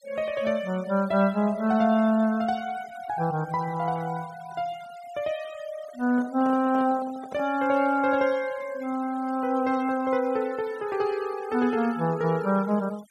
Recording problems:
noise reduction artefacts; signal-to-artefact ratio 22 dB
microphone handling noise; from 6 to 7.5 s; peak -11 dB vs average level

